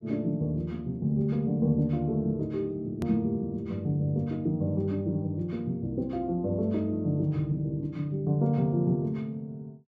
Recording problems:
edit click; at 3 s

